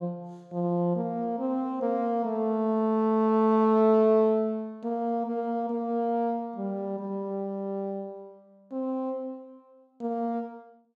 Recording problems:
none

